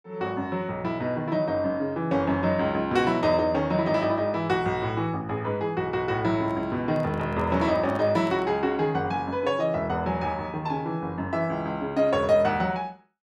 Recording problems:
microphone handling noise; from 6.5 to 8.5 s; peak -11 dB vs average level

